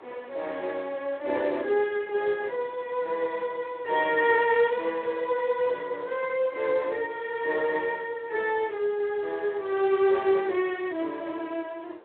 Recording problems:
phone line; 320 Hz to 3.6 kHz, Speex
wind on the microphone; below 990 Hz, SNR 24 dB

